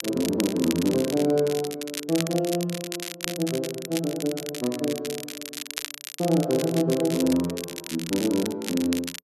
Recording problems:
crackle; vinyl, SNR 9 dB

